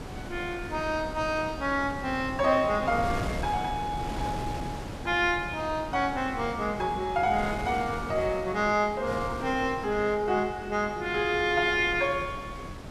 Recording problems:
wind on the microphone; below 620 Hz, SNR 10 dB

